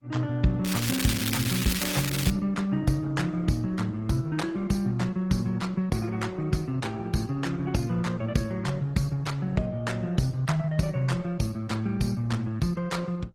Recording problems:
lossy compression; Opus, then Opus, log-spectral distance 3 dB, nothing above 18.3 kHz
crackle; from 0.5 to 2.5 s; loose cable, SNR 3 dB

